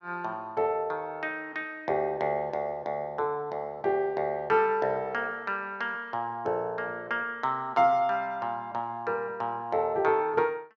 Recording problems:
none

